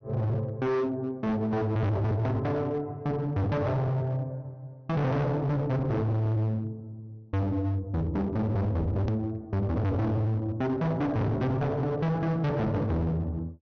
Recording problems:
low-pass filter; nothing above 6.4 kHz
distorted audio; hard clipping, signal-to-distortion ratio 6 dB
hard cut with a click; at 9 s

